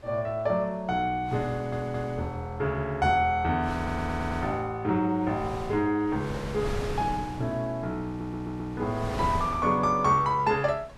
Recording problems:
wind on the microphone; below 740 Hz, SNR 12 dB
stutter; at 1.5 s, at 4 s and at 8 s

